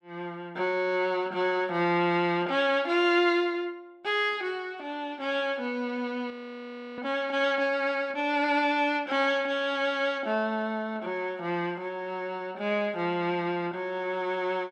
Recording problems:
frozen audio; at 6.5 s for 0.5 s

